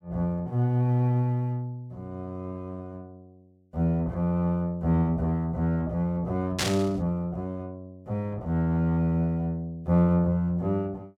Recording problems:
static burst; at 6.5 s; peak +4 dB vs average level

